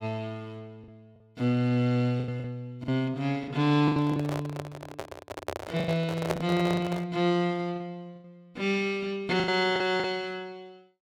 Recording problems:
lost packets; 8% of the sound replaced, filled with the last packet
handling noise; from 4 to 7 s; peak +3 dB vs average level

